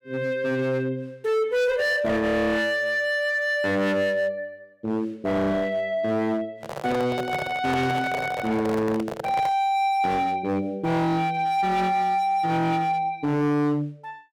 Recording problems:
distortion; hard clipping, signal-to-distortion ratio 7 dB
microphone handling noise; from 6.5 to 9.5 s; peak -3 dB vs average level

